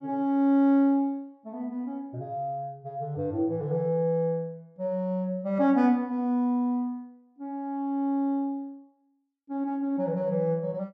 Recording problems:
none

